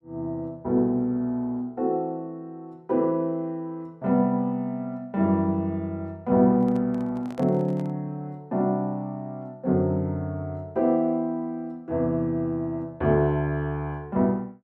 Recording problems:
microphone handling noise; from 6.5 to 8 s; peak -11 dB vs average level

